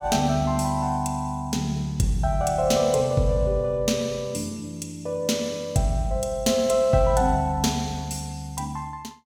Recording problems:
none

